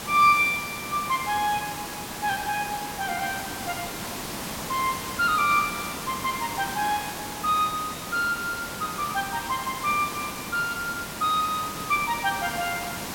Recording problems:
background hiss; slope -3 dB per octave, SNR 7 dB

